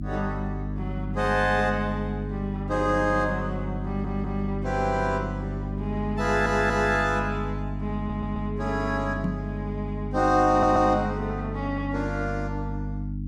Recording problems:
electrical hum; 50 Hz, harmonics up to 300 Hz, SNR 5 dB
stutter; 4 times, first at 4 s
microphone bump; at 9 s; peak +2 dB vs average level

